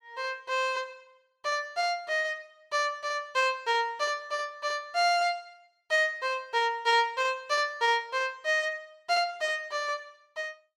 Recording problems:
none

